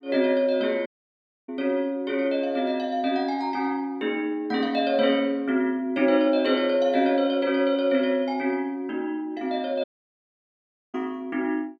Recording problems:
dropout; at 1 s for 0.5 s and at 10 s for 1 s

